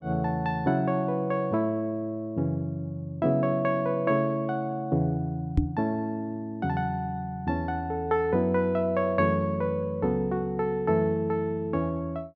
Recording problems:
microphone thump; at 5.5 s; peak +7 dB vs average level

